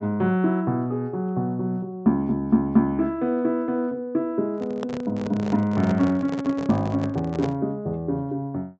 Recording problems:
treble missing; nothing above 8 kHz
microphone handling noise; from 4.5 to 7.5 s; peak -2 dB vs average level

